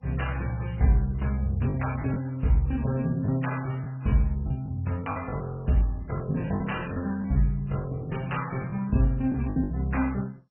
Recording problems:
lossy codec; MP3, then MP2, log-spectral distance 3 dB, nothing above 2.8 kHz
packet loss; 6% of the sound replaced, filled with the last packet

